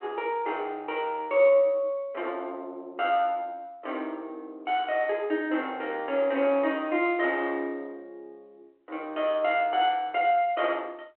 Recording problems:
phone line; 280 Hz to 3.3 kHz, G.726

